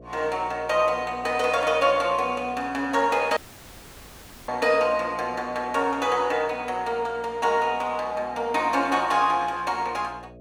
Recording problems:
hum; 60 Hz, harmonics up to 660 Hz, SNR 24 dB
dropout; at 3.5 s for 1 s

